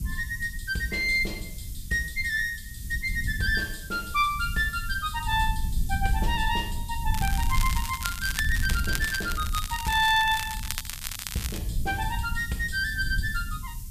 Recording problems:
hiss; SNR 16 dB
low-frequency rumble; below 82 Hz, SNR 7 dB
crackling; from 7 to 12 s; loose cable, SNR 7 dB

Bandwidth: 14.5 kHz